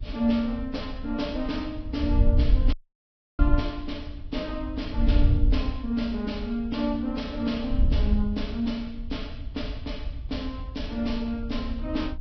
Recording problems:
lossy compression; Vorbis, log-spectral distance 2 dB, nothing above 5.7 kHz
wind noise; below 68 Hz, SNR 1 dB
dropout; at 2.5 s for 0.5 s

